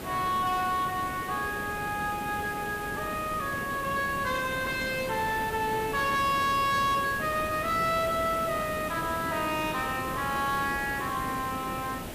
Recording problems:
distorted audio; soft clipping, signal-to-distortion ratio 12 dB
hiss; slope -6 dB per octave, SNR 8 dB

